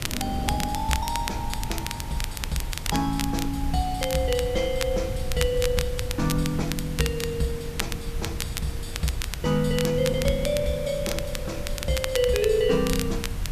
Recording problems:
background hiss; slope -3 dB per octave, SNR 14 dB
rumble; below 92 Hz, SNR 7 dB
wind noise; below 280 Hz, SNR 17 dB
crackling; vinyl, SNR 7 dB

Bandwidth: 14.5 kHz